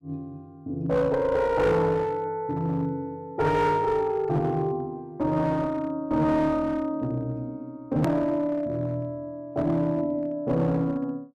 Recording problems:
distorted audio; hard clipping, uneven, signal-to-distortion ratio 10 dB
click at an edit; at 8 s

